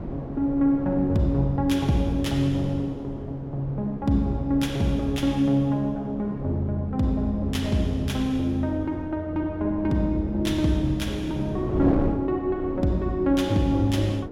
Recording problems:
wind noise; below 370 Hz, SNR 10 dB

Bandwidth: 16.5 kHz